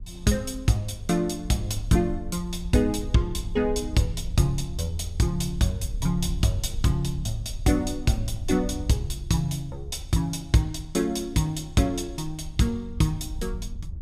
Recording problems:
wind on the microphone; below 74 Hz, SNR 11 dB

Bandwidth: 15.5 kHz